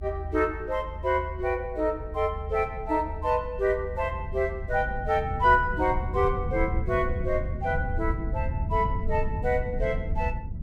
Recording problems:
low-frequency rumble; below 92 Hz, SNR 6 dB

